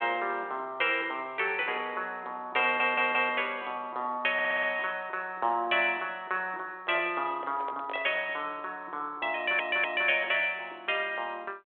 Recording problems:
telephone audio; 300 Hz to 3.5 kHz, G.726
stutter; at 2.5 s, at 4.5 s and at 9.5 s
microphone handling noise; from 7 to 8 s; peak -7 dB vs average level

